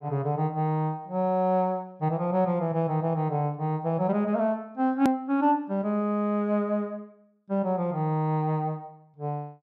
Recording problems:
edit click; at 5 s

